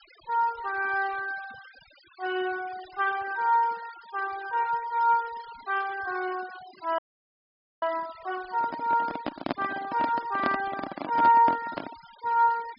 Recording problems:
treble missing; nothing above 5.5 kHz
denoising artefacts; signal-to-artefact ratio 20 dB
frozen audio; at 7 s for 1 s
microphone handling noise; from 8.5 to 12 s; peak +2 dB vs average level

